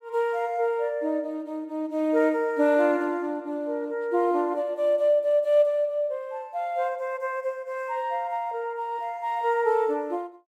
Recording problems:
none

